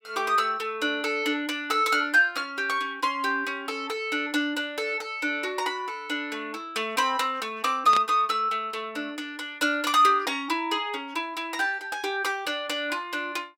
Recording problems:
static burst; at 8 s; peak -1 dB vs average level

